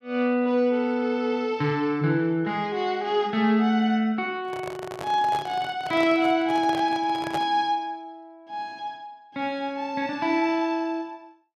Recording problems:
microphone handling noise; from 4.5 to 7.5 s; peak -3 dB vs average level

